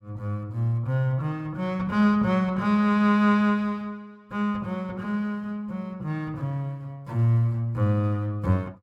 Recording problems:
none

